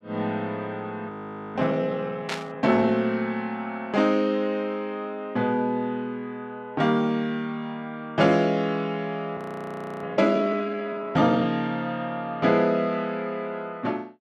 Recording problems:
audio freezing; at 1 s and at 9.5 s for 0.5 s
burst of static; at 2.5 s; peak 0 dB vs average level

